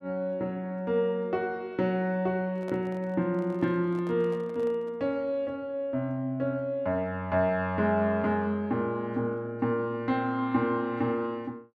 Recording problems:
handling noise; from 2.5 to 5 s; peak -9 dB vs average level

